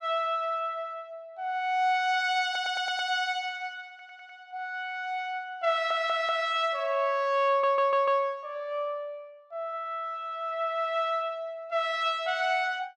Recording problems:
audio stuttering; 4 times, first at 2.5 s

